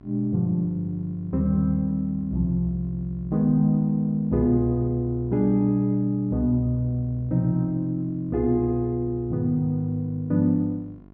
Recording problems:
hum; 50 Hz, harmonics up to 1.4 kHz, SNR 25 dB

